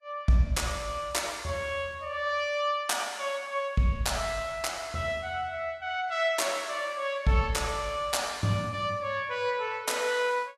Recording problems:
codec artefacts; Vorbis, log-spectral distance 3 dB, nothing above 13.1 kHz

